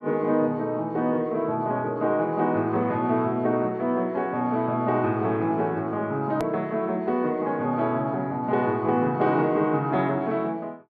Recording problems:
hard cut with a click; at 6.5 s

